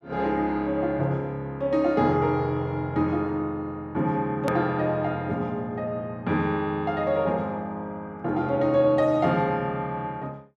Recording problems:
edit click; at 4.5 s

